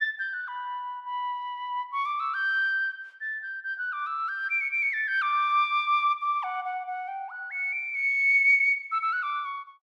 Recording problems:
none

